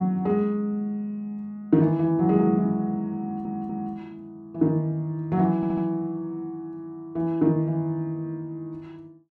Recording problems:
audio stuttering; at 3 s and at 5.5 s

